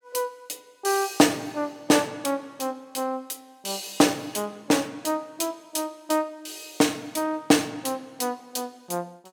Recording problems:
none

